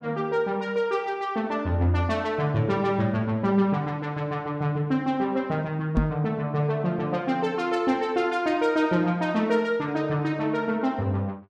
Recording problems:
knock on the microphone; at 6 s; peak +6 dB vs average level

